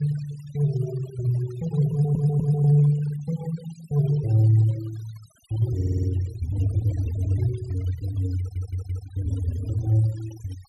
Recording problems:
denoising artefacts; signal-to-artefact ratio 21 dB
audio stuttering; at 2 s, at 6 s and at 8.5 s

